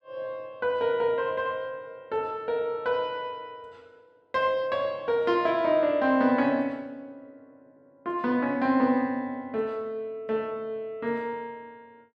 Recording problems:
none

